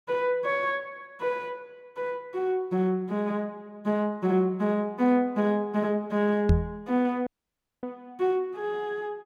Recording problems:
microphone bump; at 6.5 s; peak +9 dB vs average level
dropout; at 7.5 s for 0.5 s

